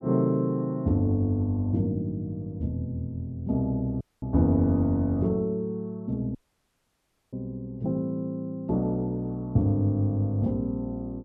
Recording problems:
audio cutting out; at 4 s and at 6.5 s for 1 s

